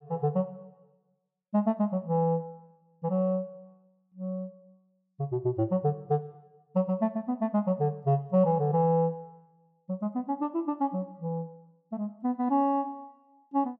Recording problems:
none

